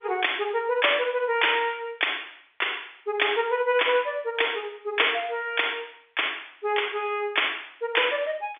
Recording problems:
telephone audio; 260 Hz to 3.6 kHz, G.711

